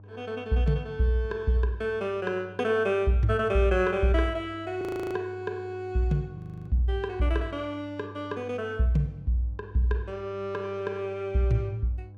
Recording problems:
hum; 50 Hz, harmonics up to 600 Hz, SNR 18 dB
frozen audio; at 5 s and at 6.5 s

